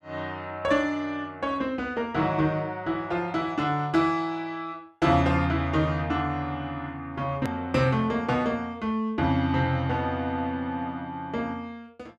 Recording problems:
edit click; at 7.5 s

